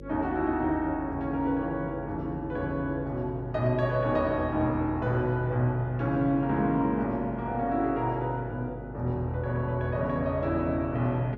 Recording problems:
hum; 50 Hz, harmonics up to 550 Hz, SNR 14 dB

